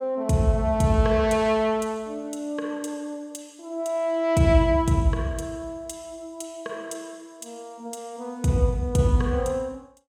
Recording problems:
none

